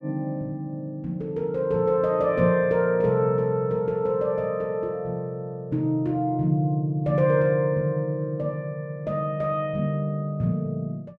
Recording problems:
none

